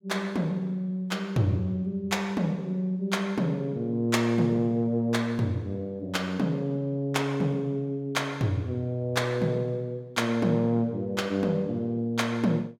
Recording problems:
none

